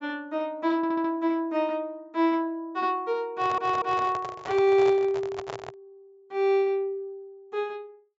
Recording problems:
treble missing; nothing above 8 kHz
audio stuttering; at 1 s and at 3.5 s
microphone handling noise; from 3.5 to 6 s; peak -5 dB vs average level

